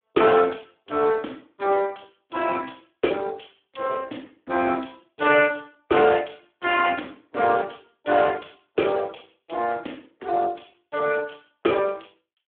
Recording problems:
telephone audio; 220 Hz to 3.4 kHz, Speex

